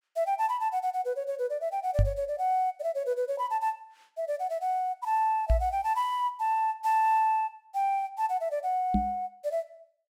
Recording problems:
knock on the microphone; at 2 s, at 5.5 s and at 9 s; peak +7 dB vs average level

